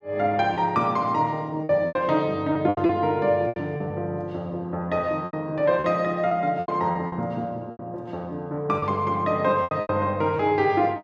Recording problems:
lost packets; 9% of the sound replaced, filled with repeated pitch periods

